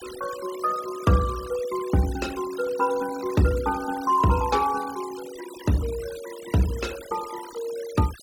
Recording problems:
denoising artefacts; signal-to-artefact ratio 16 dB

